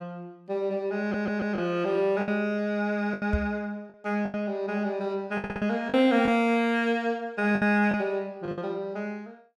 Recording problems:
packet loss; 6% of the sound replaced, filled with the last packet
stutter; at 1 s and at 5.5 s
microphone bump; at 3.5 s; peak +3 dB vs average level

